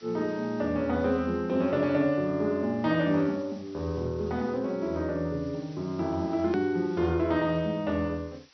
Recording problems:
treble cut off; nothing above 5.8 kHz
background hiss; slope +1 dB per octave, SNR 27 dB
click at an edit; at 6.5 s

